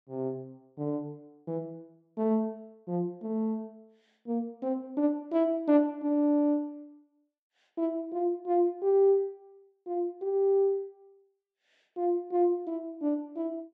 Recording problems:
none

